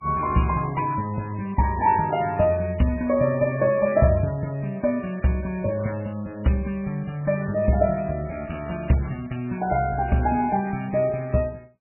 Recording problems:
lossy codec; MP3, log-spectral distance 3 dB, nothing above 2.5 kHz

